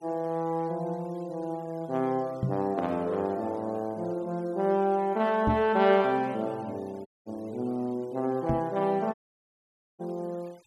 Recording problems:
noise reduction artefacts; signal-to-artefact ratio 28 dB
microphone thump; at 2.5 s, at 5.5 s and at 8.5 s; peak +4 dB vs average level
dropout; at 7 s and at 9 s for 1 s

